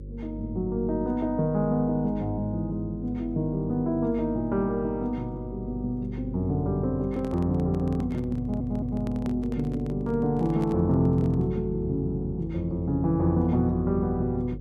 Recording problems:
electrical hum; 50 Hz, harmonics up to 550 Hz, SNR 12 dB
handling noise; from 7 to 12 s; peak -7 dB vs average level
stutter; at 8.5 s

